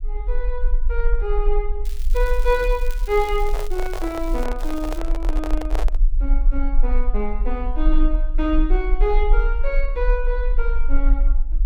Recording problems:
rumble; below 38 Hz, strongest tone 24 Hz, SNR -2 dB
crackling; from 2 to 4.5 s and at 4.5 s; loose cable, SNR 17 dB
microphone handling noise; from 3.5 to 6 s; peak 0 dB vs average level

